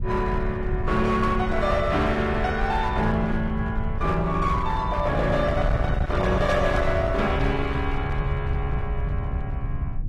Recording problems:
lossy codec; AAC, log-spectral distance 2 dB, nothing above 13.1 kHz
distorted audio; hard clipping, uneven, signal-to-distortion ratio 13 dB
wind on the microphone; below 110 Hz, SNR 4 dB

